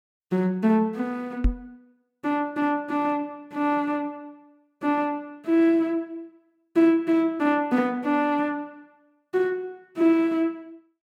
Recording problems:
microphone thump; at 1.5 s; peak +5 dB vs average level

